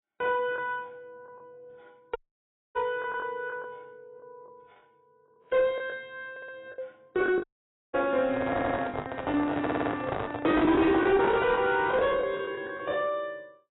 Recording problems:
lossy compression; AAC, log-spectral distance 2 dB, nothing above 3.6 kHz
distortion; soft clipping, signal-to-distortion ratio 10 dB
packet loss; 9% of the sound replaced, filled with the last packet
dropout; at 2 s for 0.5 s and at 7.5 s
stutter; at 6.5 s, at 8.5 s and at 9.5 s
microphone handling noise; from 8.5 to 12 s; peak +1 dB vs average level

